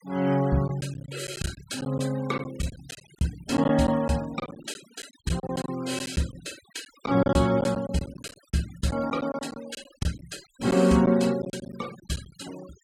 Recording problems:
denoising artefacts; signal-to-artefact ratio 19 dB
packet loss; 10% of the sound replaced, filled with silence

